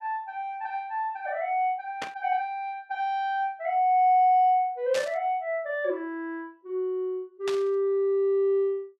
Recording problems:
burst of static; at 2 s, at 5 s and at 7.5 s; peak -4 dB vs average level

